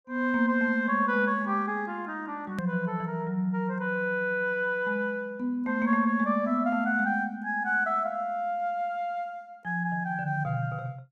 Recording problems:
edit click; at 2.5 s

